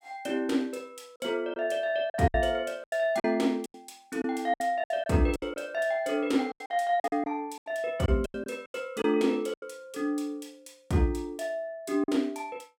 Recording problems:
lost packets; 10% of the sound replaced, filled with silence

